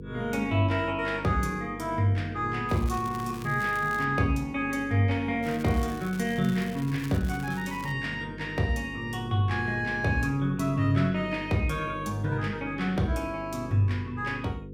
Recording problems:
electrical hum; 50 Hz, harmonics up to 500 Hz, SNR 14 dB
crackling; from 2.5 to 4 s and from 5.5 to 8 s; loose cable, SNR 19 dB

